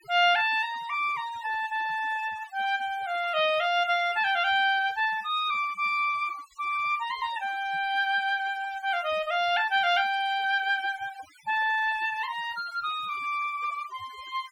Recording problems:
denoising artefacts; signal-to-artefact ratio 22 dB

